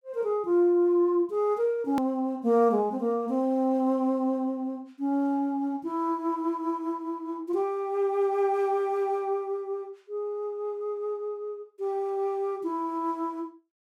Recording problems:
edit click; at 2 s

